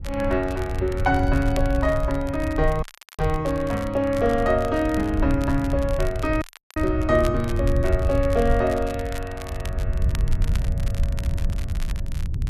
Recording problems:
wind on the microphone; below 88 Hz, SNR 4 dB
crackle; vinyl, SNR 19 dB
dropout; at 3 s and at 6.5 s

